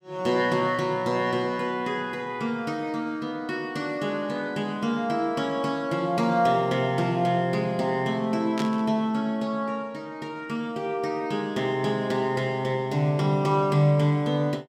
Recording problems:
burst of static; at 8.5 s; peak -5 dB vs average level

